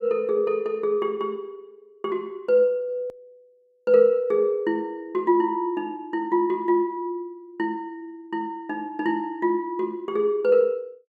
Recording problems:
edit click; at 3 s

